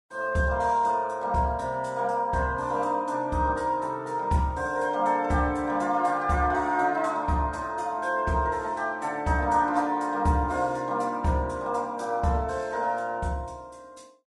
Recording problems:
lossy compression; Vorbis, log-spectral distance 2 dB, nothing above 11 kHz

